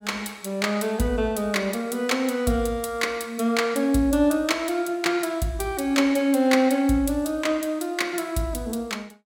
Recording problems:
none

